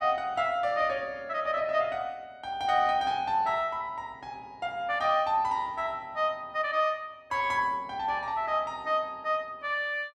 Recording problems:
none

